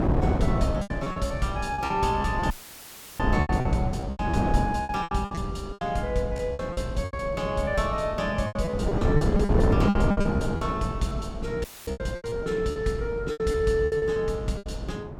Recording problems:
wind on the microphone; below 330 Hz, SNR 2 dB
packet loss; 15% of the sound replaced, filled with repeated pitch periods
audio cutting out; at 2.5 s for 0.5 s and at 12 s; filled with static

